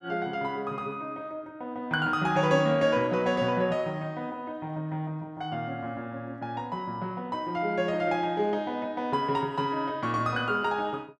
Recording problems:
none

